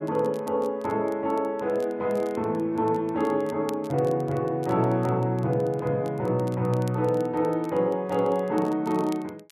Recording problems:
crackle; vinyl, SNR 26 dB

